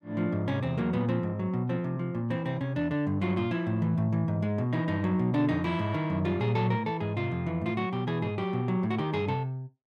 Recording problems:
none

